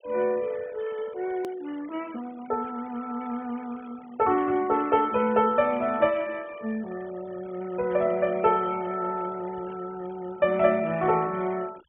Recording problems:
treble missing; nothing above 3.4 kHz
noise reduction artefacts; signal-to-artefact ratio 21 dB
edit click; at 1.5 s

